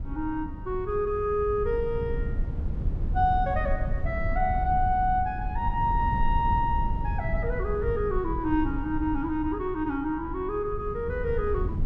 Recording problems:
rumble; below 92 Hz, SNR 4 dB

